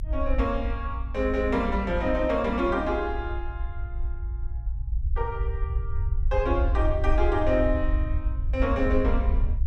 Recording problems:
low-frequency rumble; below 68 Hz, SNR 2 dB

